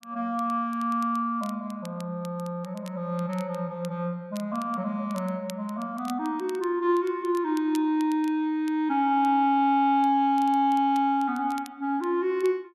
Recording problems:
crackling; vinyl, SNR 24 dB

